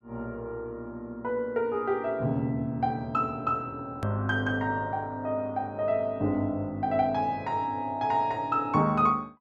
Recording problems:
hard cut with a click; at 4 s

